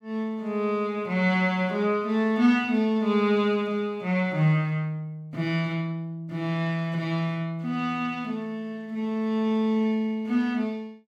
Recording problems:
none

